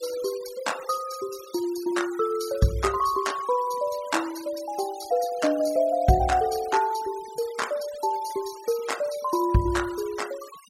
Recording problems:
noise reduction artefacts; signal-to-artefact ratio 16 dB

